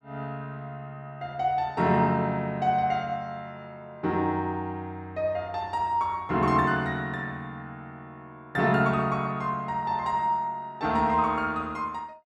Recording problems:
none

